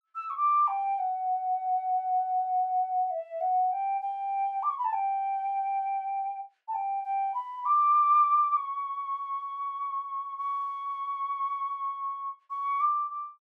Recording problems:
none

